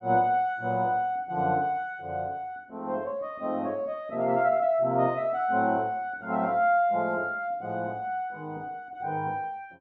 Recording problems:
none

